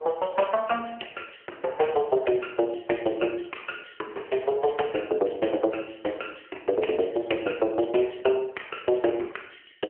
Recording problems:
phone line; 300 Hz to 3.1 kHz, AMR-NB

